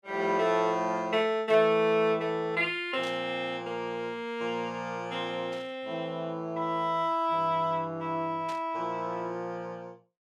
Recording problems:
static burst; 4 times, first at 1.5 s; peak -11 dB vs average level

